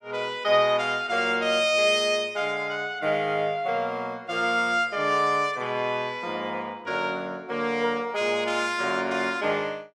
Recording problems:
none

